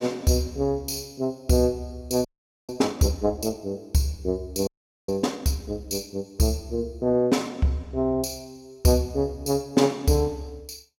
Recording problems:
audio freezing; at 2.5 s and at 4.5 s

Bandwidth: 16.5 kHz